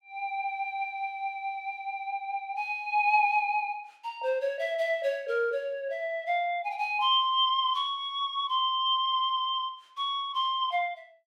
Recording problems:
none

